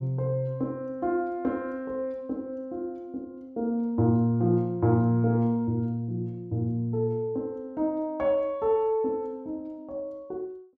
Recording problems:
none

